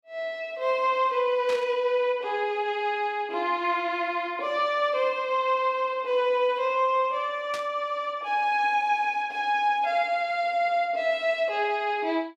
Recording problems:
burst of static; at 1.5 s and at 7.5 s; peak -7 dB vs average level

